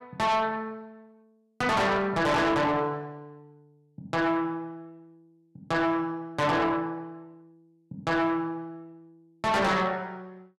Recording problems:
distorted audio; soft clipping, signal-to-distortion ratio 6 dB

